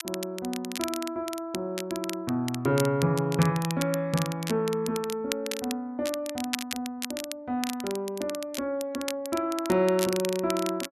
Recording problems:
crackle; vinyl, SNR 8 dB

